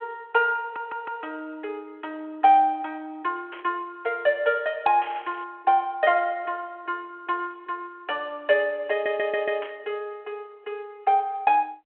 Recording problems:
telephone audio; 260 Hz to 3.3 kHz, G.726
stutter; at 0.5 s and at 9 s
static burst; at 3.5 s, at 5 s and at 9.5 s; peak -9 dB vs average level

